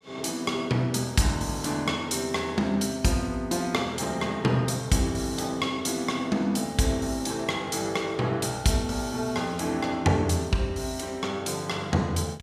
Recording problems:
none

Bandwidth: 14.5 kHz